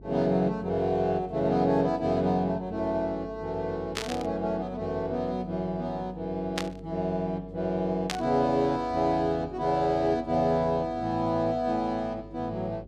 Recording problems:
hum; 50 Hz, harmonics up to 400 Hz, SNR 20 dB
static burst; at 4 s, at 6.5 s and at 8 s; peak +2 dB vs average level

